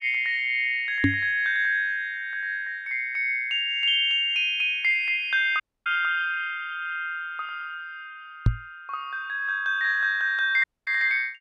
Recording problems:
microphone thump; at 1 s and at 8.5 s; peak +7 dB vs average level
dropout; at 5.5 s and at 11 s

